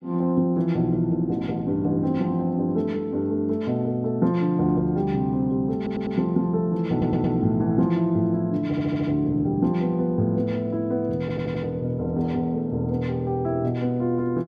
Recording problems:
audio stuttering; 4 times, first at 6 s

